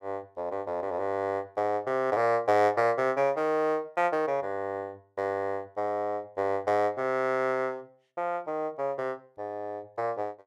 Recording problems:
none

